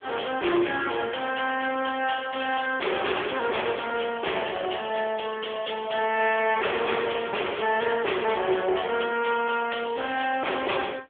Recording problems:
phone line; 300 Hz to 3.4 kHz, AMR-NB
distortion; soft clipping, signal-to-distortion ratio 8 dB

